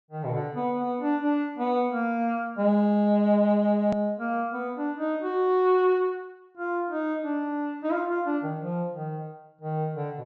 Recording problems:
treble missing; nothing above 8 kHz
hard cut with a click; at 4 s

